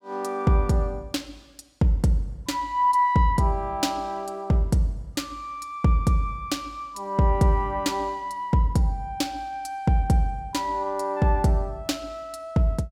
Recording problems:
none

